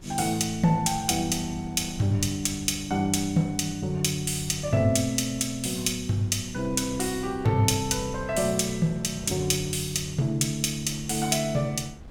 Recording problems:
wind noise; below 160 Hz, SNR 19 dB

